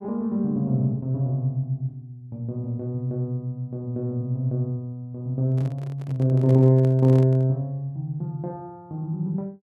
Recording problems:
microphone handling noise; from 5.5 to 7.5 s; peak -11 dB vs average level

